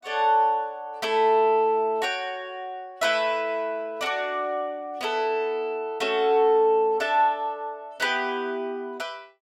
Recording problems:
none

